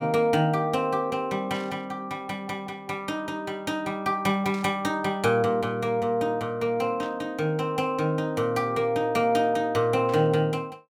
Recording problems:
burst of static; 4 times, first at 1.5 s; peak -13 dB vs average level

